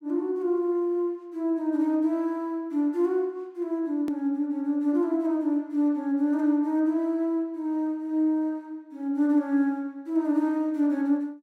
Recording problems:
edit click; at 4 s

